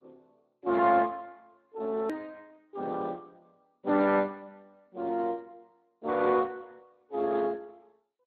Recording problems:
lossy compression; MP2, then Speex, log-spectral distance 3 dB, nothing above 13.1 kHz
hard cut with a click; at 2 s

